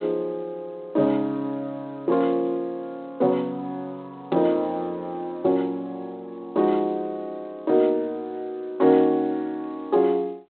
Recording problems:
phone line; 220 Hz to 3.7 kHz, G.726

